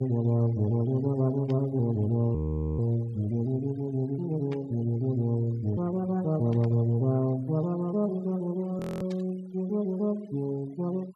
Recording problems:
denoising artefacts; signal-to-artefact ratio 25 dB
burst of static; 4 times, first at 1.5 s; peak -14 dB vs average level
frozen audio; at 2.5 s and at 9 s

